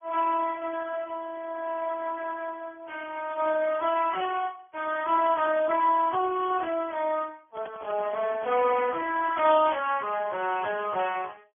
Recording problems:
telephone audio; 340 Hz to 2.2 kHz, Speex
handling noise; from 7.5 to 9.5 s; peak -7 dB vs average level

